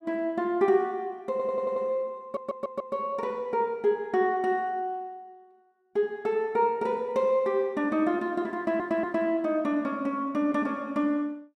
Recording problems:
audio stuttering; at 1.5 s, at 2 s and at 8.5 s

